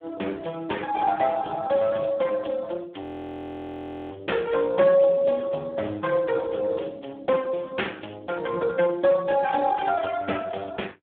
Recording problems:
telephone audio; 220 Hz to 3.6 kHz, Speex
audio freezing; at 3 s for 1 s

